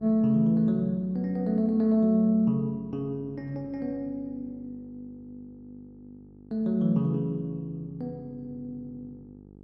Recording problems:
electrical hum; 50 Hz, harmonics up to 850 Hz, SNR 22 dB

